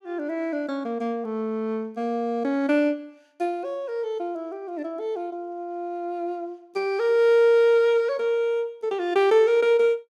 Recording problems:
none

